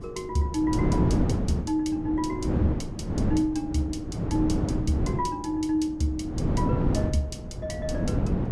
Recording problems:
wind noise; below 280 Hz, SNR 0 dB

